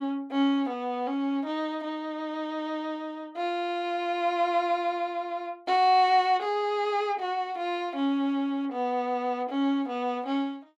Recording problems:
none

